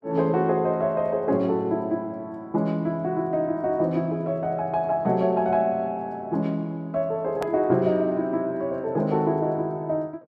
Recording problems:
hard cut with a click; at 7.5 s

